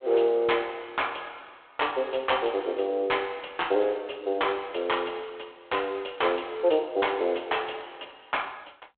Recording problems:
phone line; 260 Hz to 3.5 kHz, G.726

